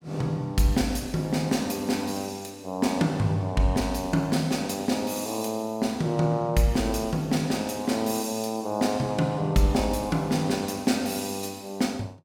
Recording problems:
none

